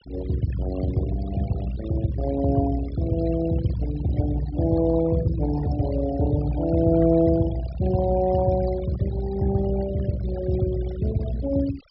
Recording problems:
treble missing; nothing above 5.3 kHz
noise reduction artefacts; signal-to-artefact ratio 16 dB

